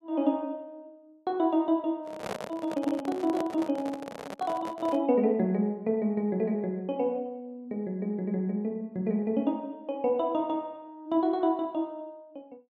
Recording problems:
handling noise; from 2 to 5 s; peak -1 dB vs average level

